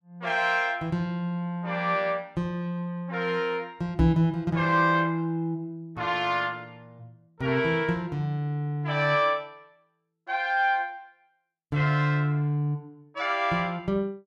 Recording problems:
microphone thump; at 4 s; peak +4 dB vs average level

